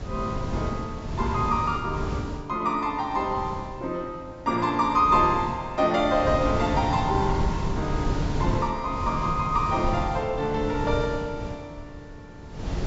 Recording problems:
low-pass filter; nothing above 8 kHz
wind noise; below 220 Hz, SNR 6 dB

